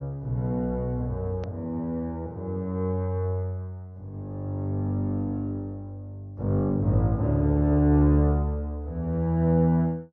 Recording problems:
low-pass filter; nothing above 6.4 kHz
edit click; at 1.5 s

